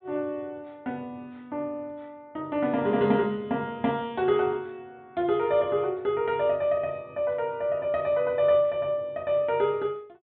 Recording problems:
low-pass filter; nothing above 4 kHz

